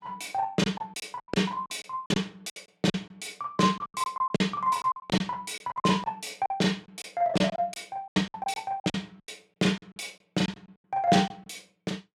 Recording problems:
lost packets; 15% of the sound replaced, filled with silence

